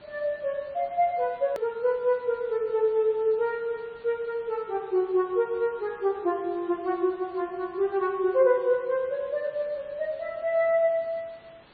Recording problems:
treble cut off; nothing above 4.6 kHz
lossy compression; MP3, log-spectral distance 3 dB
background hiss; SNR 27 dB
click at an edit; at 1.5 s

